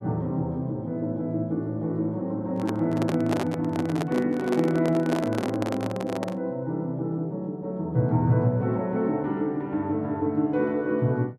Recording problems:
microphone handling noise; from 2.5 to 6.5 s; peak +1 dB vs average level

